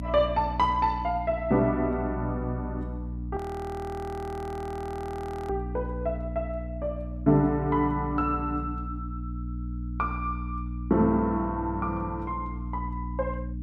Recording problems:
hum; 60 Hz, harmonics up to 300 Hz, SNR 7 dB
frozen audio; at 3.5 s for 2 s

